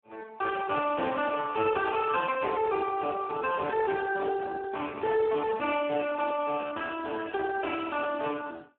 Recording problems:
telephone audio; 300 Hz to 2.9 kHz, Speex
handling noise; from 4 to 7.5 s; peak -8 dB vs average level

